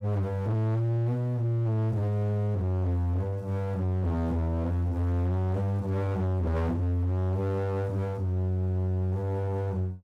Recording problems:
distortion; hard clipping, uneven, signal-to-distortion ratio 5 dB

